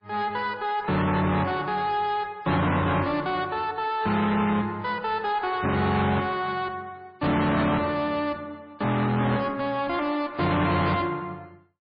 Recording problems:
lossy compression; MP3, log-spectral distance 3 dB, nothing above 4.4 kHz
distortion; soft clipping, signal-to-distortion ratio 7 dB

